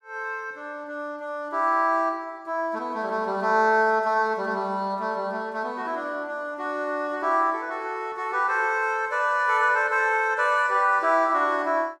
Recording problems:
none

